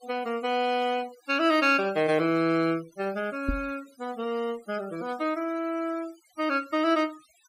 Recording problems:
noise reduction artefacts; signal-to-artefact ratio 19 dB
microphone bump; at 3.5 s; peak +1 dB vs average level

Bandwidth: 15.5 kHz